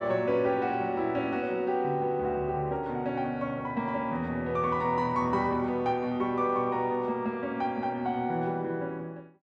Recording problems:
none

